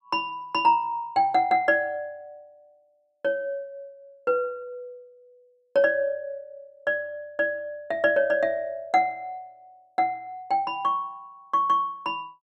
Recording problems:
none

